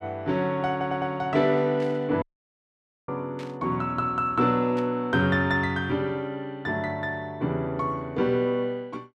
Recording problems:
stutter; at 0.5 s
static burst; at 2 s, at 3.5 s and at 5 s; peak -13 dB vs average level
dropout; at 2 s for 1 s

